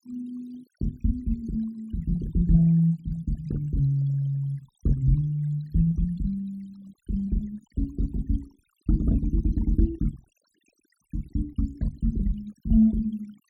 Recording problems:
noise reduction artefacts; signal-to-artefact ratio 25 dB

